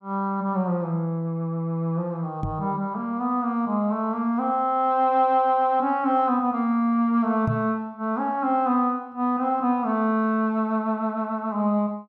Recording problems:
knock on the microphone; at 2.5 s and at 7.5 s; peak +1 dB vs average level

